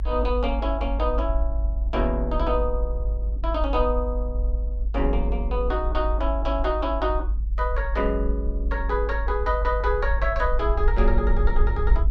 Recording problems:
low-frequency rumble; below 52 Hz, strongest tone 50 Hz, SNR 0 dB

